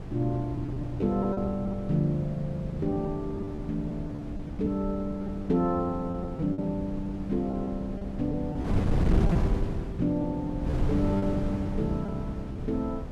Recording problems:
wind on the microphone; below 200 Hz, SNR 4 dB
packet loss; 7% of the sound replaced, filled with repeated pitch periods

